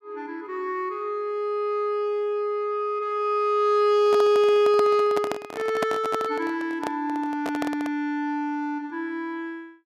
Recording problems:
microphone handling noise; from 4 to 8 s; peak +1 dB vs average level

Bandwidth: 14.5 kHz